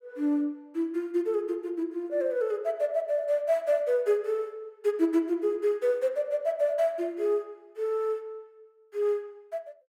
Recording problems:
none

